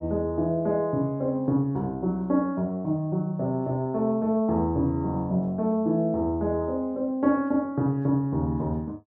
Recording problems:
none

